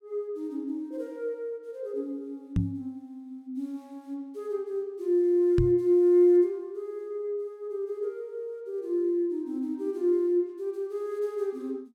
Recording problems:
microphone bump; at 2.5 s and at 5.5 s; peak +5 dB vs average level

